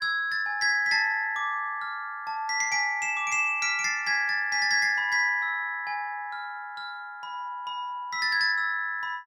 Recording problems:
none

